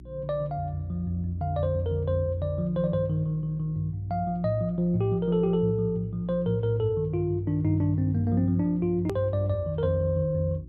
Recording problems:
electrical hum; 60 Hz, harmonics up to 360 Hz, SNR 18 dB
hard cut with a click; at 9 s

